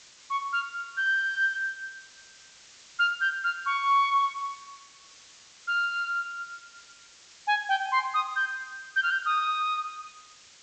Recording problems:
treble cut off; nothing above 8 kHz
background hiss; slope +2 dB per octave, SNR 23 dB

